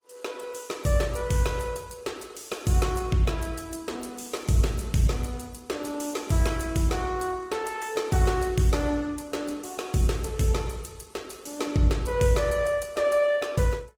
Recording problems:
codec artefacts; Opus, log-spectral distance 5 dB, nothing above 19 kHz

